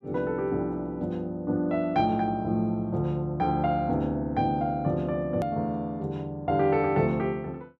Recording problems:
hard cut with a click; at 5.5 s

